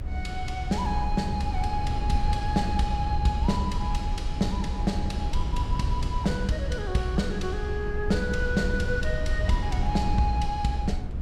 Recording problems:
low-frequency rumble; below 90 Hz, SNR 1 dB

